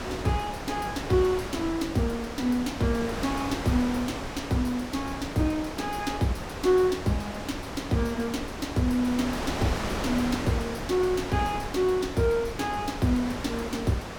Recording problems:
wind noise; below 1.6 kHz, SNR 6 dB

